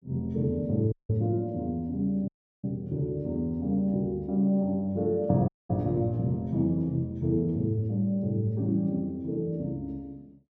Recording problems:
dropout; at 1 s, at 2.5 s and at 5.5 s

